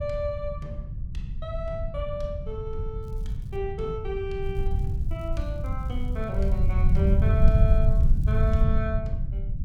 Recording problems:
rumble; below 90 Hz, SNR -6 dB
crackle; at 3 s and from 4.5 to 8.5 s; loose cable, SNR 28 dB

